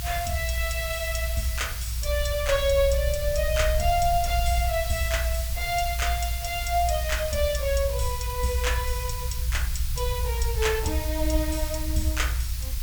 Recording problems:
hiss; slope +5 dB per octave, SNR 7 dB
low-frequency rumble; below 62 Hz, strongest tone 60 Hz, SNR 3 dB

